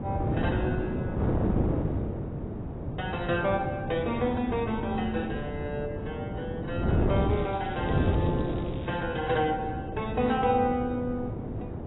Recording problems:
codec artefacts; AAC, log-spectral distance 3 dB, nothing above 3.8 kHz
wind on the microphone; below 360 Hz, SNR 1 dB
crackling; from 7 to 9 s; loose cable, SNR 20 dB

